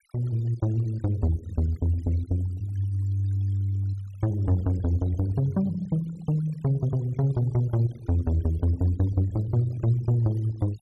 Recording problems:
noise reduction artefacts; signal-to-artefact ratio 25 dB

